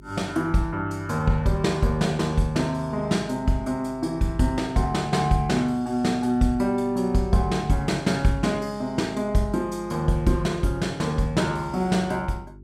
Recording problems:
hum; 50 Hz, harmonics up to 400 Hz, SNR 22 dB

